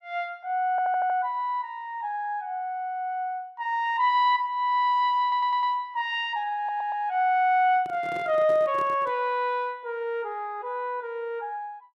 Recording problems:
audio stuttering; at 0.5 s, at 5 s and at 6.5 s
microphone handling noise; from 7.5 to 9 s; peak -9 dB vs average level

